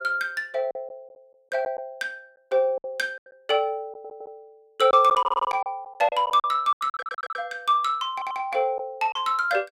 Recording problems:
packet loss; 8% of the sound replaced, filled with silence
stutter; 4 times, first at 4 s

